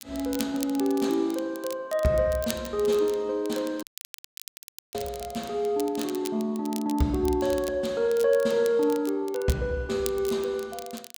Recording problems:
crackle; vinyl, SNR 15 dB
audio cutting out; at 4 s for 1 s

